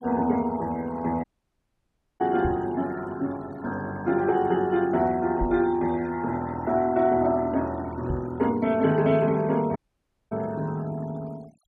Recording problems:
denoising artefacts; signal-to-artefact ratio 22 dB
dropout; at 1 s for 1 s and at 10 s for 0.5 s
microphone bump; at 2.5 s, at 5.5 s and at 8 s; peak -1 dB vs average level

